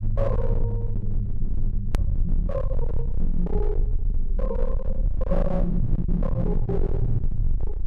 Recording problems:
distortion; hard clipping, uneven, signal-to-distortion ratio 7 dB
low-frequency rumble; below 46 Hz, strongest tone 20 Hz, SNR 0 dB
click at an edit; at 2 s

